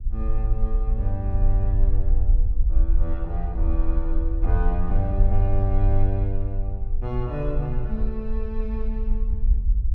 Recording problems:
rumble; below 48 Hz, SNR -4 dB

